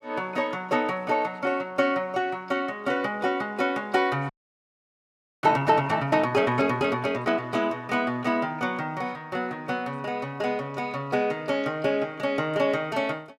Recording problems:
frozen audio; at 4.5 s for 1 s

